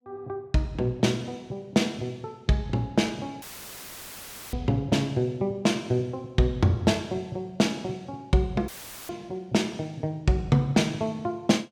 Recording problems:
audio cutting out; at 3.5 s for 1 s and at 8.5 s; filled with static

